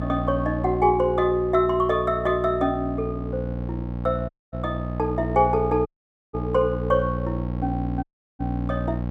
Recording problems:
hum; 60 Hz, harmonics up to 1.1 kHz, SNR 6 dB
dropout; at 4.5 s, at 6 s and at 8 s

